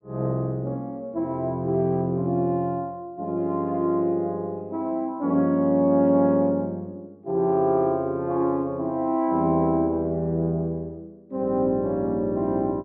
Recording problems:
none

